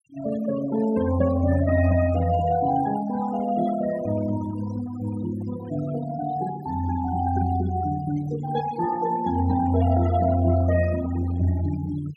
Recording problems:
denoising artefacts; signal-to-artefact ratio 15 dB

